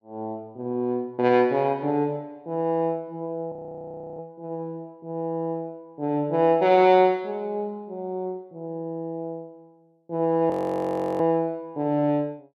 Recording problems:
frozen audio; at 3.5 s for 0.5 s and at 11 s for 0.5 s

